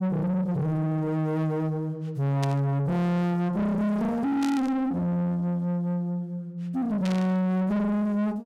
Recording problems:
distorted audio; soft clipping, signal-to-distortion ratio 7 dB
static burst; at 2.5 s, at 4.5 s and at 7 s; peak -6 dB vs average level

